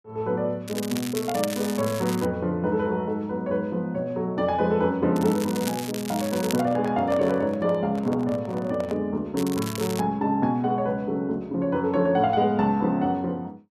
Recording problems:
crackle; from 0.5 to 2.5 s, from 5 to 6.5 s and at 9.5 s; loose cable, SNR 11 dB
handling noise; from 6.5 to 9 s; peak -3 dB vs average level

